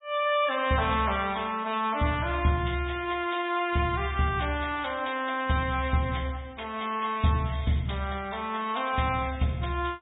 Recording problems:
treble cut off; nothing above 3.7 kHz
lossy compression; MP3, log-spectral distance 5 dB

